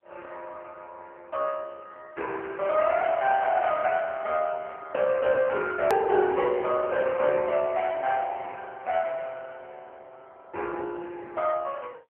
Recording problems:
telephone audio; 320 Hz to 3.1 kHz, AMR-NB
hard cut with a click; at 6 s

